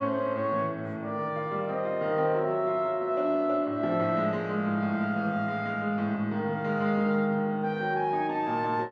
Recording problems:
none

